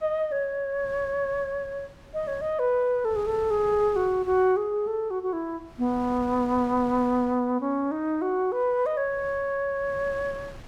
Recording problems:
wind noise; below 900 Hz, SNR 21 dB

